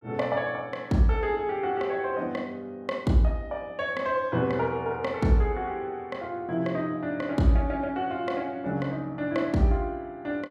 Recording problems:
none

